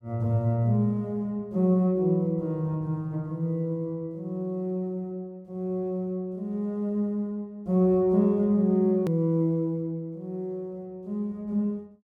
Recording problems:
click at an edit; at 9 s

